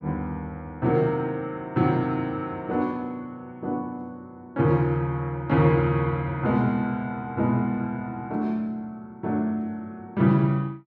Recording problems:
none

